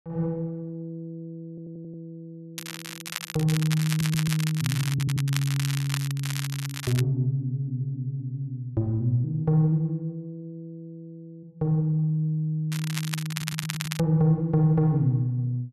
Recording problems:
audio stuttering; 4 times, first at 1.5 s
crackle; from 2.5 to 7 s and from 13 to 14 s; loose cable, SNR 8 dB

